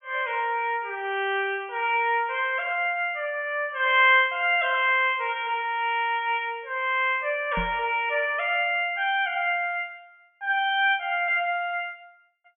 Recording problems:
treble missing; nothing above 3.4 kHz
microphone thump; at 7.5 s; peak -5 dB vs average level

